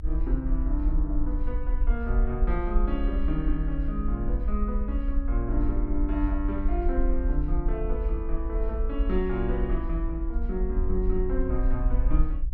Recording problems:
low-frequency rumble; below 54 Hz, SNR -2 dB

